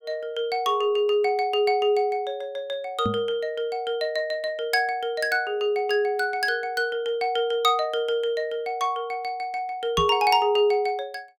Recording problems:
knock on the microphone; at 3 s and at 10 s; peak 0 dB vs average level

